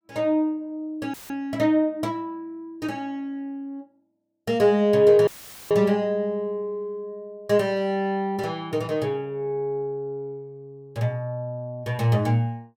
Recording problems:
dropout; at 1 s and at 5.5 s; filled with static

